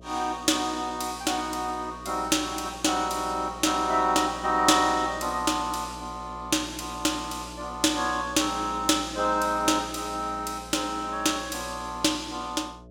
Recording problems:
hum; 60 Hz, harmonics up to 660 Hz, SNR 19 dB

